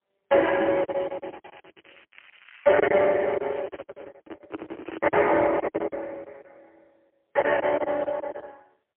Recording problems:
telephone audio; 280 Hz to 3.1 kHz, AMR-NB, then MP3
lost packets; 16% of the sound replaced, filled with silence
crackle; from 1 to 4 s and at 5 s; loose cable, SNR 27 dB
microphone handling noise; from 3.5 to 6 s; peak -6 dB vs average level

